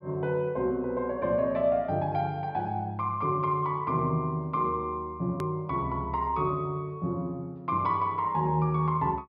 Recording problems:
treble missing; nothing above 5.5 kHz
edit click; at 5.5 s

